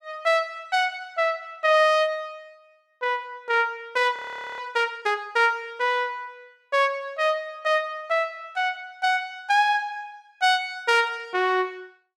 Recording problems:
audio freezing; at 4 s

